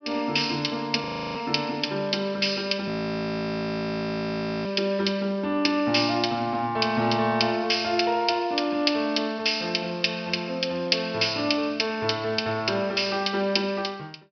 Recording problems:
treble missing; nothing above 5.5 kHz
audio freezing; at 1 s and at 3 s for 2 s

